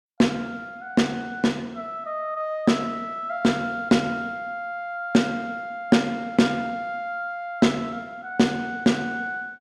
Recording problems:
none

